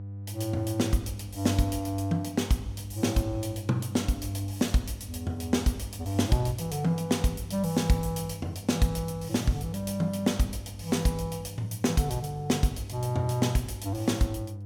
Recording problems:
electrical hum; 50 Hz, harmonics up to 500 Hz, SNR 12 dB

